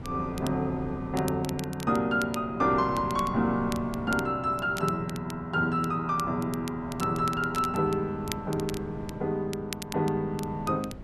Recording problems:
wind noise; below 270 Hz, SNR 16 dB
crackling; vinyl, SNR 16 dB

